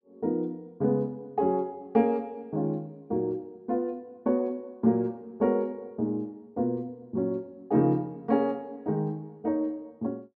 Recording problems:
none

